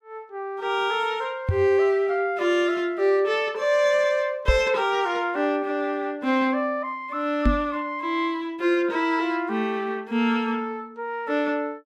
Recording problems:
microphone bump; at 1.5 s, at 4.5 s and at 7.5 s; peak +6 dB vs average level

